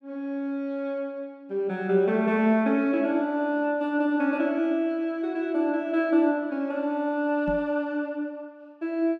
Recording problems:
microphone bump; at 7.5 s; peak -5 dB vs average level

